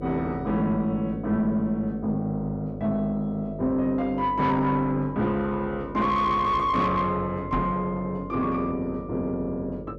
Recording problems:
distorted audio; soft clipping, signal-to-distortion ratio 10 dB
hum; 50 Hz, harmonics up to 600 Hz, SNR 13 dB
microphone bump; at 7.5 s; peak +2 dB vs average level

